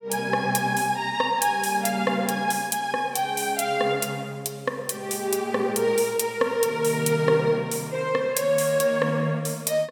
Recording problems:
none

